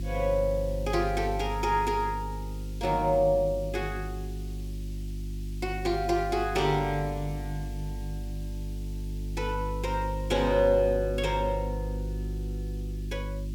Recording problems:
mains hum; 50 Hz, harmonics up to 350 Hz, SNR 7 dB
hiss; SNR 24 dB

